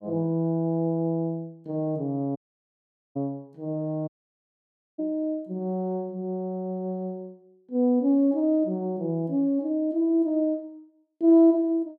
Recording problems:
audio cutting out; at 2.5 s for 1 s and at 4 s for 1 s

